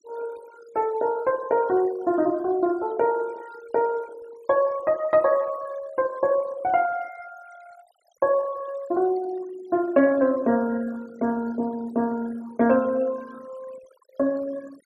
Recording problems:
noise reduction artefacts; signal-to-artefact ratio 23 dB

